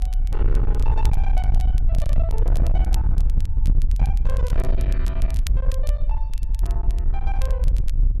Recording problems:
distorted audio; hard clipping, uneven, signal-to-distortion ratio 7 dB
low-frequency rumble; below 56 Hz, SNR -13 dB
crackling; vinyl, SNR 10 dB

